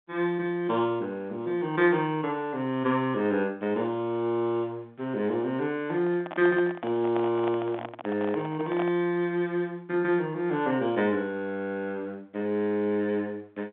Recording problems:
telephone audio; 130 Hz to 3.6 kHz, G.711
handling noise; from 6 to 9 s; peak -3 dB vs average level

